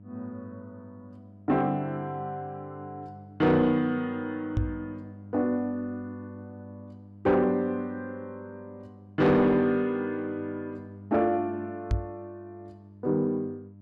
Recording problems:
distortion; soft clipping, signal-to-distortion ratio 10 dB
hum; 50 Hz, harmonics up to 600 Hz, SNR 19 dB
microphone bump; at 4.5 s and at 12 s; peak +4 dB vs average level

